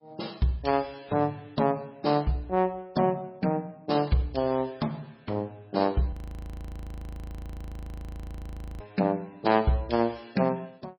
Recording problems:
lossy codec; MP3, log-spectral distance 3 dB
audio freezing; at 6 s for 2.5 s

